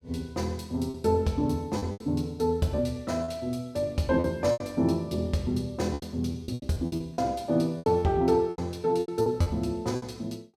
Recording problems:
packet loss; 11% of the sound replaced, filled with repeated pitch periods

